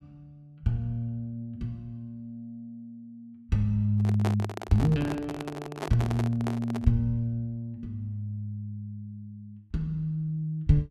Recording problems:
microphone handling noise; from 4 to 7 s; peak +1 dB vs average level

